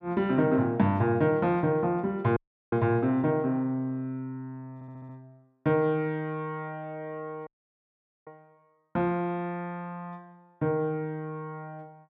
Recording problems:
dropout; at 2.5 s and at 7.5 s for 1 s
stutter; at 4.5 s

